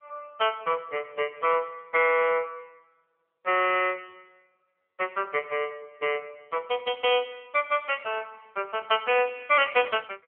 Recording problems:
telephone audio; 390 Hz to 3.3 kHz, AMR-NB

